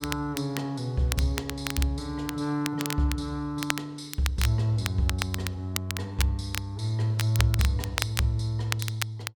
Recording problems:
crackle; vinyl, SNR 6 dB

